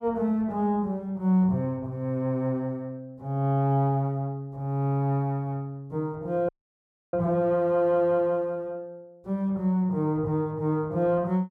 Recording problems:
audio cutting out; at 6.5 s for 0.5 s

